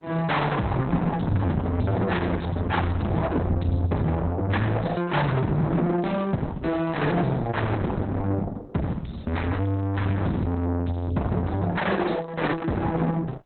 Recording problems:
lossy codec; Opus, log-spectral distance 3 dB, nothing above 4 kHz
distortion; soft clipping, signal-to-distortion ratio 6 dB

